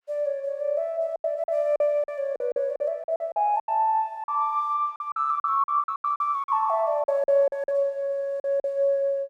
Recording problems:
lost packets; 13% of the sound replaced, filled with silence

